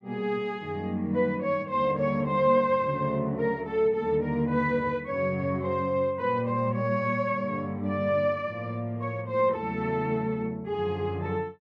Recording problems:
none

